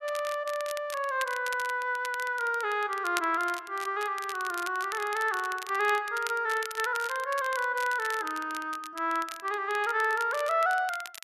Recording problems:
crackle; vinyl, SNR 14 dB

